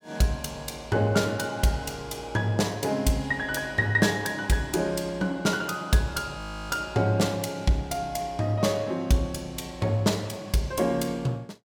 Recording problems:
frozen audio; at 6.5 s

